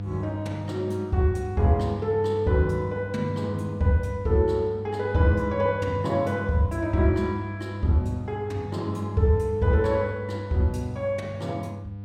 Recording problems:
hum; 50 Hz, harmonics up to 500 Hz, SNR 9 dB

